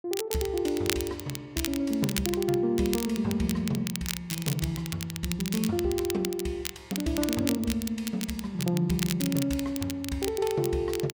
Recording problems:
crackling; vinyl, SNR 7 dB

